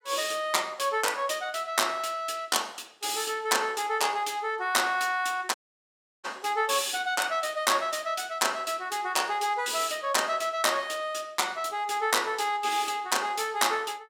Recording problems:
dropout; at 5.5 s for 0.5 s

